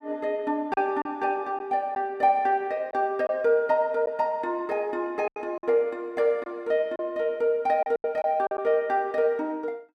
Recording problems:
packet loss; 5% of the sound replaced, filled with silence

